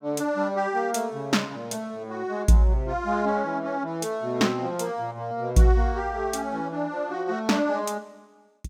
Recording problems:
none

